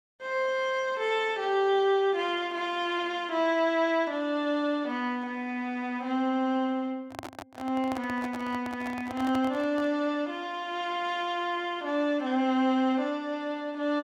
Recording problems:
microphone handling noise; from 7 to 10 s; peak -5 dB vs average level

